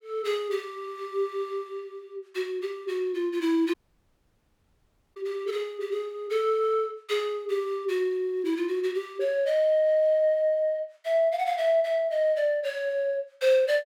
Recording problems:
dropout; at 3.5 s for 1.5 s

